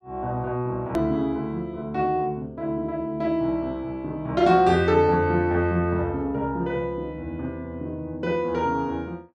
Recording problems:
edit click; at 1 s

